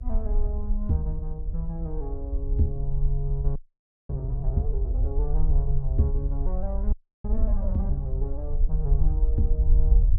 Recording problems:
hum; 60 Hz, harmonics up to 660 Hz, SNR 25 dB
low-frequency rumble; below 52 Hz, SNR -4 dB
audio freezing; at 3.5 s for 0.5 s and at 7 s

